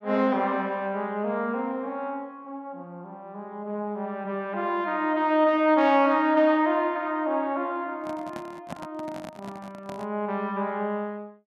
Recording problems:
handling noise; from 8 to 10 s; peak -6 dB vs average level

